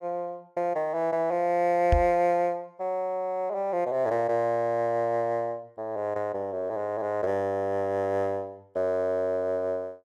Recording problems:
microphone bump; at 2 s; peak +6 dB vs average level

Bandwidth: 14 kHz